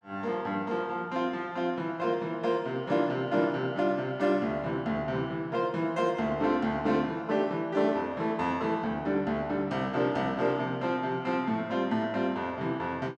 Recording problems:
none

